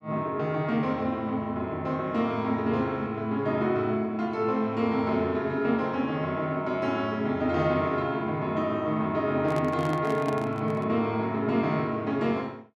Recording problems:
microphone handling noise; from 9.5 to 11 s; peak -4 dB vs average level

